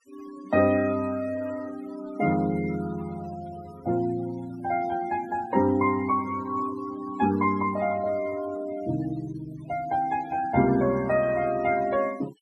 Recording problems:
denoising artefacts; signal-to-artefact ratio 19 dB

